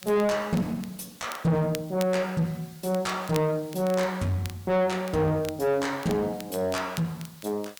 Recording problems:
distorted audio; soft clipping, signal-to-distortion ratio 6 dB
hiss; slope +1 dB per octave, SNR 23 dB
crackling; vinyl, SNR 18 dB

